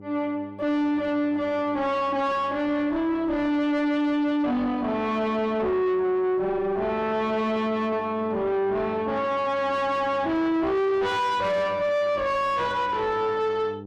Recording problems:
distortion; soft clipping, signal-to-distortion ratio 7 dB
hum; 50 Hz, harmonics up to 950 Hz, SNR 18 dB

